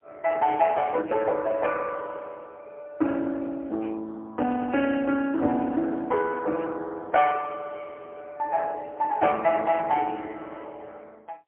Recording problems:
phone line; 240 Hz to 3 kHz, AMR-NB, then MP3

